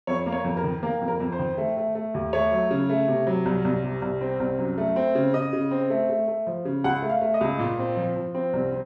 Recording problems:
none

